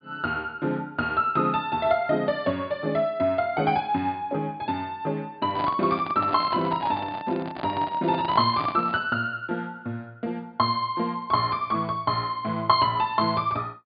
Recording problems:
treble missing; nothing above 4.9 kHz
handling noise; from 5.5 to 9 s; peak -4 dB vs average level

